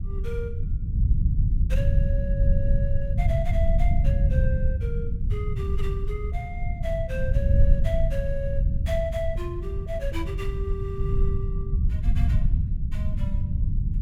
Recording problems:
rumble; below 88 Hz, SNR -9 dB

